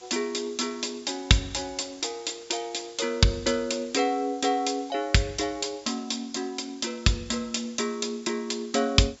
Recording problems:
low-pass filter; nothing above 8 kHz
hiss; slope 0 dB per octave, SNR 23 dB

